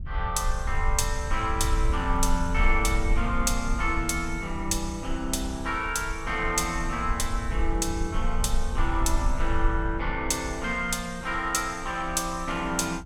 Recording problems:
rumble; below 56 Hz, SNR 4 dB

